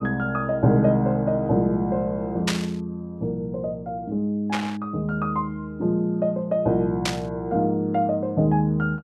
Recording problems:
burst of static; at 2.5 s, at 4.5 s and at 7 s; peak +3 dB vs average level

